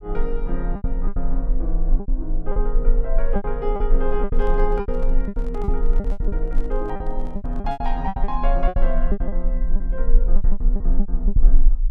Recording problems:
low-frequency rumble; below 34 Hz, strongest tone 18 Hz, SNR -4 dB
packet loss; 15% of the sound replaced, filled with repeated pitch periods
handling noise; from 4 to 8 s; peak -9 dB vs average level

